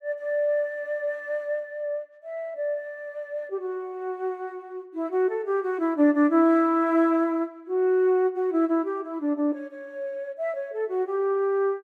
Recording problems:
none

